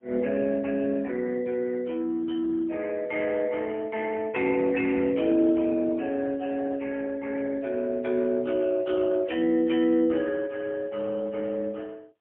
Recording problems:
telephone audio; 220 Hz to 2.9 kHz, AMR-NB, then MP3

